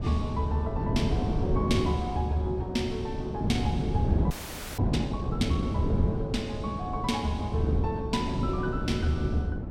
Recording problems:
wind on the microphone; below 250 Hz, SNR 0 dB
frozen audio; at 4.5 s

